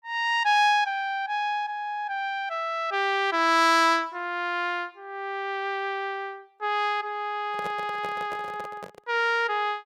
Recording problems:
microphone handling noise; from 7.5 to 9 s; peak -8 dB vs average level

